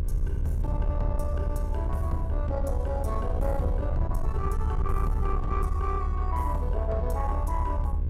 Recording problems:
distortion; soft clipping, signal-to-distortion ratio 12 dB
hum; 60 Hz, harmonics up to 1.7 kHz, SNR 11 dB
rumble; below 76 Hz, SNR -3 dB

